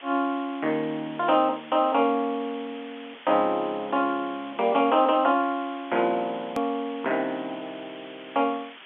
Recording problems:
telephone audio; 190 Hz to 3.4 kHz, G.711
hiss; SNR 19 dB
edit click; at 6.5 s

